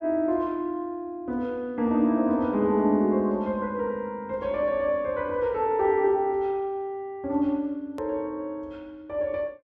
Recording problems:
treble cut off; nothing above 8 kHz
hard cut with a click; at 8 s

